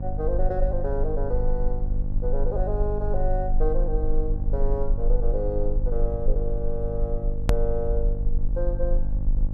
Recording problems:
hum; 50 Hz, harmonics up to 600 Hz, SNR 4 dB
low-frequency rumble; below 40 Hz, strongest tone 22 Hz, SNR -2 dB
hard cut with a click; at 7.5 s

